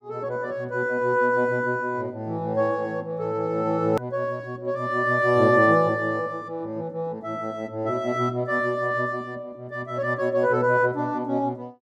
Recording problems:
edit click; at 4 s

